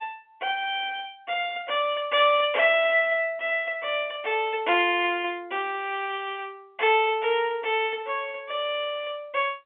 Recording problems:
phone line; 280 Hz to 3.4 kHz, G.711

